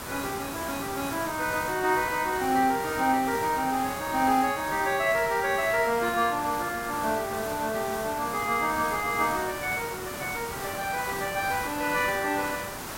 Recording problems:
background hiss; SNR 9 dB

